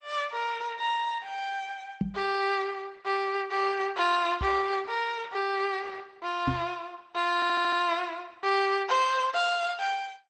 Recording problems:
codec artefacts; MP2, then Opus, log-spectral distance 4 dB, nothing above 8.5 kHz
microphone thump; at 2 s, at 4.5 s and at 6.5 s; peak +4 dB vs average level
stutter; at 7.5 s

